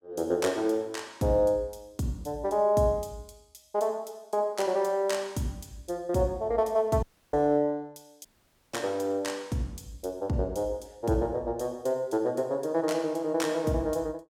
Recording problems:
audio cutting out; at 7 s and at 8.5 s

